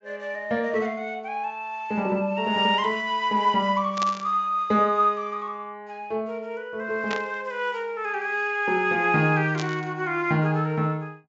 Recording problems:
low-pass filter; nothing above 7.4 kHz
burst of static; at 4 s, at 7 s and at 9.5 s; peak -2 dB vs average level

